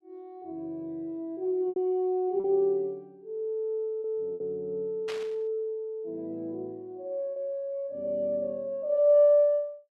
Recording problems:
lost packets; 3% of the sound replaced, filled with repeated pitch periods
static burst; at 5 s; peak -7 dB vs average level

